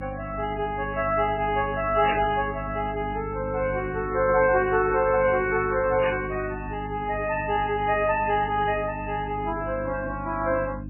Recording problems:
codec artefacts; MP3, then MP3, log-spectral distance 3 dB, nothing above 2.5 kHz
electrical hum; 50 Hz, harmonics up to 300 Hz, SNR 11 dB
static burst; at 2 s and at 6 s; peak 0 dB vs average level

